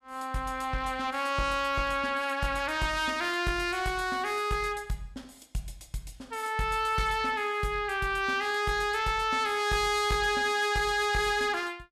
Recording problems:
distorted audio; hard clipping, uneven, signal-to-distortion ratio 11 dB

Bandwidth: 14 kHz